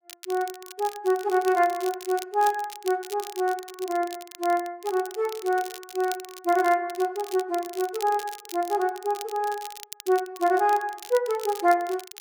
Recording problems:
crackle; vinyl, SNR 16 dB

